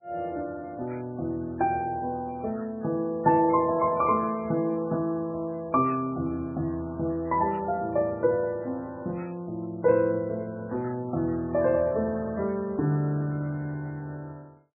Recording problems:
codec artefacts; MP3, log-spectral distance 2 dB, nothing above 2.4 kHz

